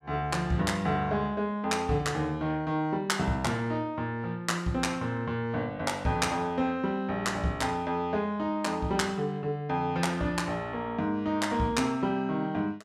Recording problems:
none

